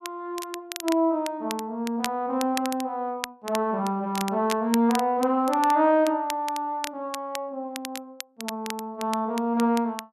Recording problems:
crackle; vinyl, SNR 12 dB

